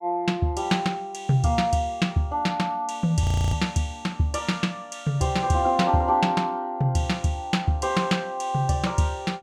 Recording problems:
frozen audio; at 3 s

